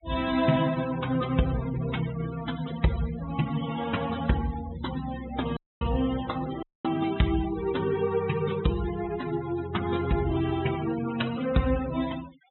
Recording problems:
treble missing; nothing above 4 kHz
denoising artefacts; signal-to-artefact ratio 14 dB
audio cutting out; at 5.5 s and at 6.5 s

